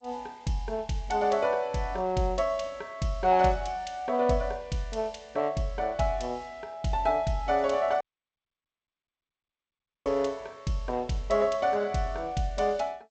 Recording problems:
codec artefacts; G.722, log-spectral distance 2 dB, nothing above 7.6 kHz
dropout; at 8 s for 2 s

